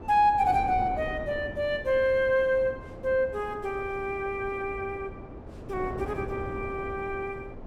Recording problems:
wind noise; below 460 Hz, SNR 13 dB

